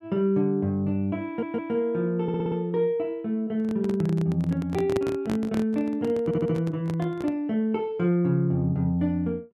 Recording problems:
audio stuttering; at 1.5 s, at 2 s and at 6 s
microphone handling noise; from 3.5 to 7.5 s; peak 0 dB vs average level

